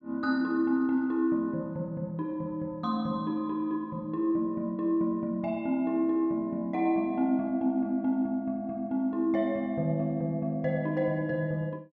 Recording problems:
none

